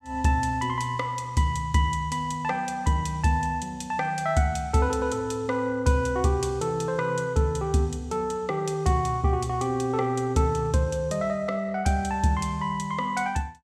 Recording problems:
none

